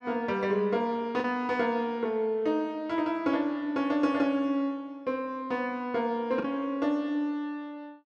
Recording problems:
packet loss; 1% of the sound replaced, filled with the last packet

